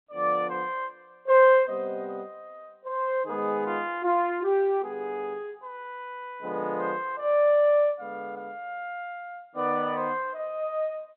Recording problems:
telephone audio; 220 Hz to 3.7 kHz, G.711

